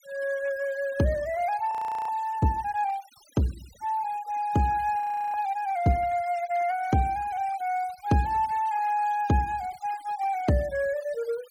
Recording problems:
noise reduction artefacts; signal-to-artefact ratio 22 dB
frozen audio; at 1.5 s and at 5 s

